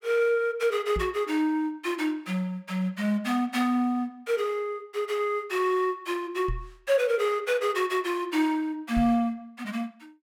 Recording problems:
microphone bump; at 1 s, at 6.5 s and at 9 s; peak -2 dB vs average level

